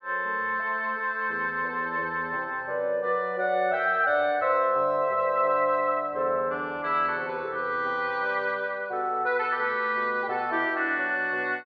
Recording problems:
none

